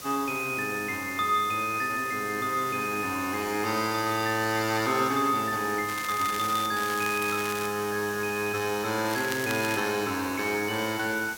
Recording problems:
background hiss; SNR 12 dB
crackling; at 6 s, at 7 s and at 9 s; loose cable, SNR 10 dB

